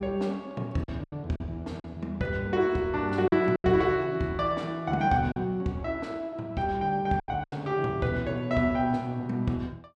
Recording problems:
lost packets; 5% of the sound replaced, filled with silence

